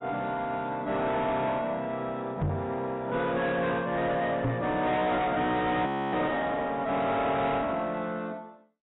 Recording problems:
lossy compression; AAC, log-spectral distance 2 dB, nothing above 3.8 kHz
distortion; soft clipping, signal-to-distortion ratio 7 dB
knock on the microphone; at 2.5 s and at 4.5 s; peak +3 dB vs average level
frozen audio; at 6 s

